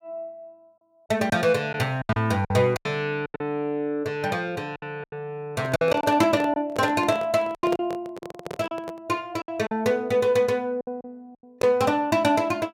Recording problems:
lost packets; 9% of the sound replaced, filled with silence
handling noise; from 5.5 to 9 s; peak -2 dB vs average level

